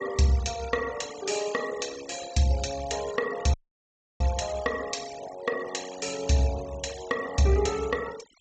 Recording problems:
treble cut off; nothing above 8 kHz
noise reduction artefacts; signal-to-artefact ratio 15 dB
audio cutting out; at 3.5 s for 0.5 s

